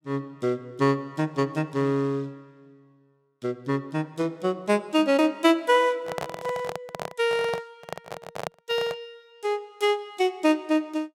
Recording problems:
microphone handling noise; from 6 to 9 s; peak -2 dB vs average level

